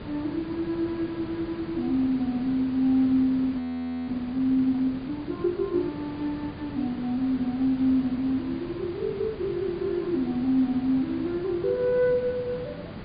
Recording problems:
low-pass filter; nothing above 4.8 kHz
hiss; SNR 12 dB
frozen audio; at 3.5 s

